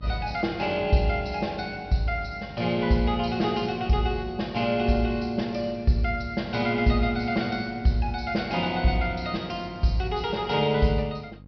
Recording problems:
treble missing; nothing above 5.5 kHz
electrical hum; 50 Hz, harmonics up to 600 Hz, SNR 20 dB

